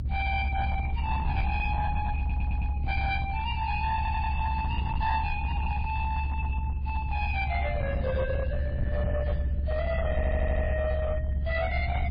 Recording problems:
lossy codec; MP3, log-spectral distance 2 dB, nothing above 4.8 kHz
distortion; hard clipping, uneven, signal-to-distortion ratio 12 dB
rumble; below 92 Hz, strongest tone 70 Hz, SNR -1 dB
stutter; at 2 s, at 4 s and at 10 s
burst of static; at 9.5 s; peak -15 dB vs average level

